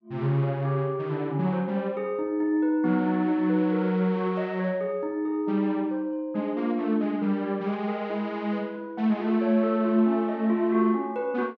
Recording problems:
none

